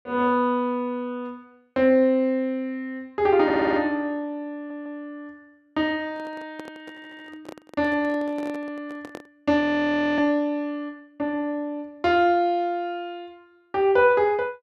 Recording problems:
stutter; at 3.5 s, at 4.5 s and at 7 s
microphone handling noise; from 6 to 9.5 s; peak -10 dB vs average level
frozen audio; at 9.5 s for 0.5 s

